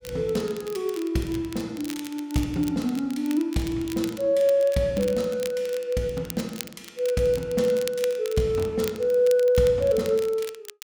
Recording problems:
crackling; vinyl, SNR 17 dB

